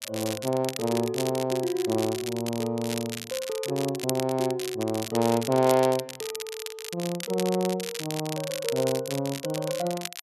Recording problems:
crackle; vinyl, SNR 8 dB

